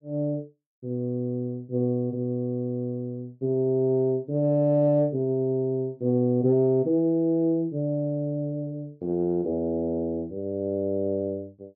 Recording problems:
none

